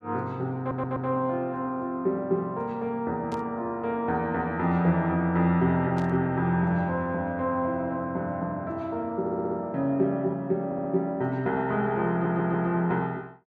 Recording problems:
stutter; 4 times, first at 0.5 s
burst of static; at 3.5 s and at 6 s; peak -15 dB vs average level

